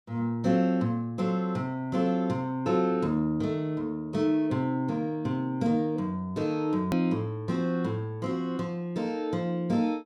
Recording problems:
click at an edit; at 7 s

